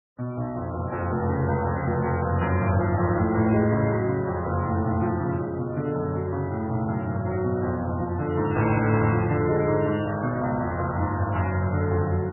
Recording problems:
lossy codec; MP3, log-spectral distance 3 dB, nothing above 2.6 kHz

